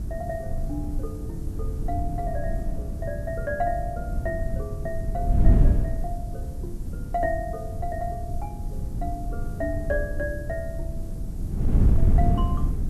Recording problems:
hiss; slope +6 dB per octave, SNR 22 dB
wind on the microphone; below 100 Hz, SNR -5 dB

